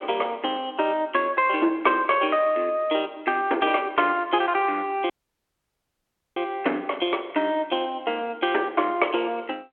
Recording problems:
phone line; 260 Hz to 3.4 kHz, G.726
dropout; at 5 s for 1.5 s

